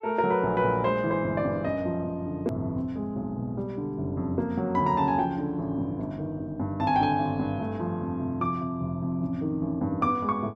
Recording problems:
edit click; at 2.5 s

